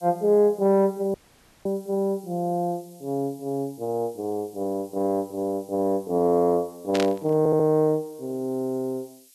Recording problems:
hiss; SNR 27 dB
audio cutting out; at 1 s for 0.5 s
burst of static; at 7 s; peak -1 dB vs average level
stutter; at 7.5 s

